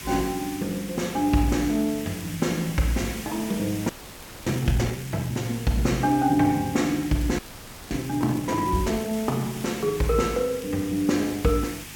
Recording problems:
electrical hum; 50 Hz, harmonics up to 800 Hz, SNR 22 dB
background hiss; SNR 13 dB
crackling; vinyl, SNR 27 dB
frozen audio; at 4 s for 0.5 s and at 7.5 s for 0.5 s

